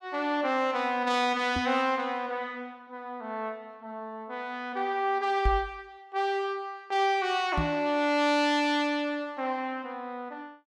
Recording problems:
knock on the microphone; at 1.5 s, at 5.5 s and at 7.5 s; peak +3 dB vs average level

